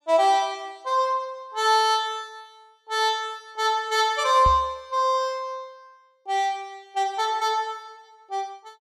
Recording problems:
microphone thump; at 4.5 s; peak 0 dB vs average level

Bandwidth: 15.5 kHz